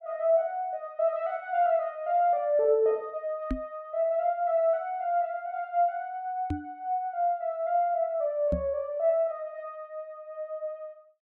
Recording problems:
microphone thump; at 3.5 s, at 6.5 s and at 8.5 s; peak +1 dB vs average level

